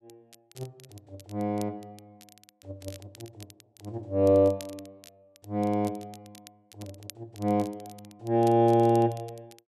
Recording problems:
crackling; vinyl, SNR 26 dB

